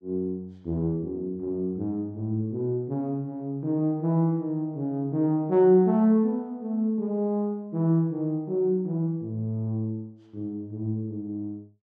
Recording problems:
none

